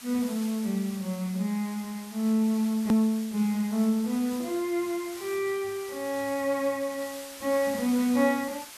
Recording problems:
hiss; slope +1 dB per octave, SNR 15 dB
hard cut with a click; at 3 s

